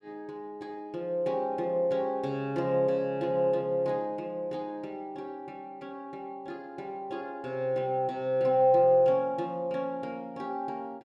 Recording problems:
none

